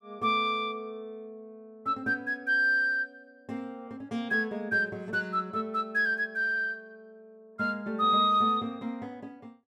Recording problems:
none

